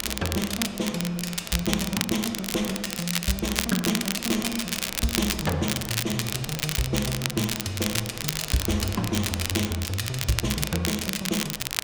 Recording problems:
wind on the microphone; below 1.1 kHz, SNR 16 dB
crackling; vinyl, SNR 2 dB

